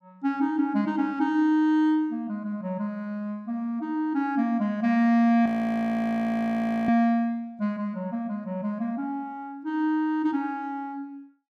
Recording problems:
audio freezing; at 5.5 s for 1.5 s

